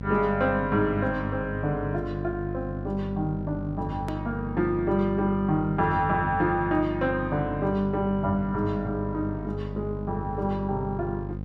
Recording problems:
hum; 50 Hz, harmonics up to 800 Hz, SNR 7 dB
click at an edit; at 4 s

